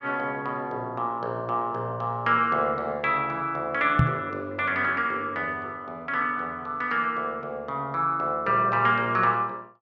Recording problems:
microphone bump; at 4 s; peak +8 dB vs average level

